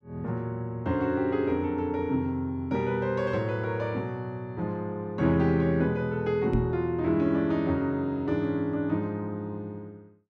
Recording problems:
knock on the microphone; at 6.5 s; peak +5 dB vs average level

